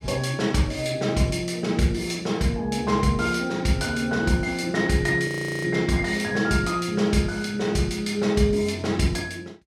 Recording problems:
frozen audio; at 5.5 s

